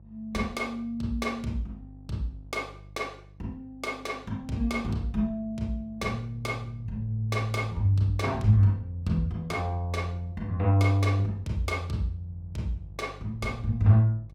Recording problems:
hum; 50 Hz, harmonics up to 500 Hz, SNR 20 dB

